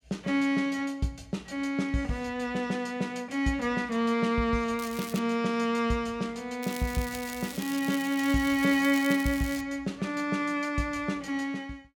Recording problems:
crackle; at 5 s and from 6.5 to 9.5 s; loose cable, SNR 13 dB

